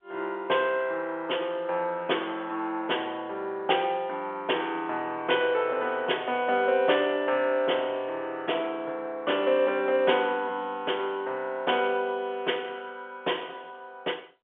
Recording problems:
telephone audio; 300 Hz to 3.5 kHz, G.711

